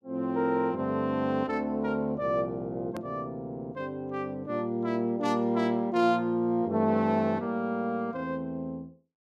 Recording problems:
edit click; at 3 s

